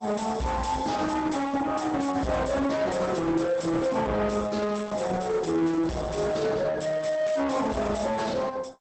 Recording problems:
lossy codec; Opus, log-spectral distance 4 dB, nothing above 8.2 kHz
distorted audio; soft clipping, signal-to-distortion ratio 6 dB

